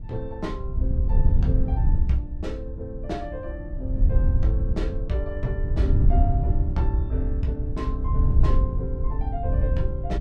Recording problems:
wind on the microphone; below 82 Hz, SNR -7 dB

